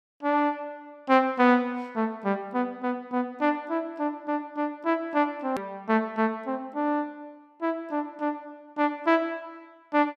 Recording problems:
click at an edit; at 5.5 s

